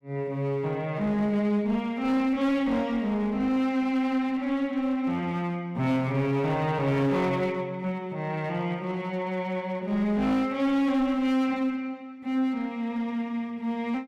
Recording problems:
distortion; hard clipping, uneven, signal-to-distortion ratio 10 dB

